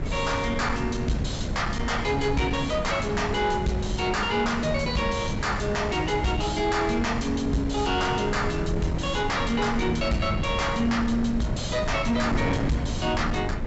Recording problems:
treble cut off; nothing above 7.7 kHz
distorted audio; soft clipping, signal-to-distortion ratio 10 dB
hiss; SNR 40 dB
low-frequency rumble; below 140 Hz, SNR 8 dB
wind on the microphone; below 460 Hz, SNR 8 dB

